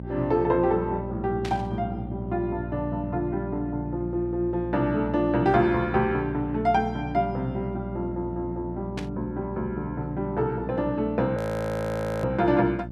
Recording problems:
hum; 60 Hz, harmonics up to 660 Hz, SNR 9 dB
burst of static; at 1.5 s and at 9 s; peak -5 dB vs average level
audio freezing; at 11 s for 1 s

